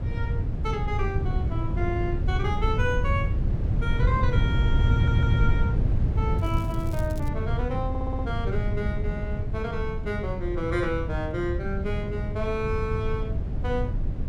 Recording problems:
low-frequency rumble; below 120 Hz, SNR -4 dB
stutter; at 5 s and at 8 s
crackle; at 6.5 s; loose cable, SNR 19 dB

